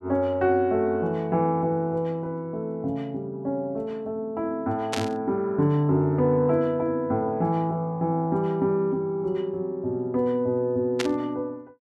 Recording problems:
static burst; at 5 s and at 11 s; peak +1 dB vs average level

